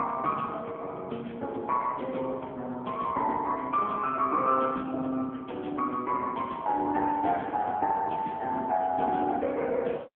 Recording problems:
telephone audio; 320 Hz to 3.3 kHz, AMR-NB

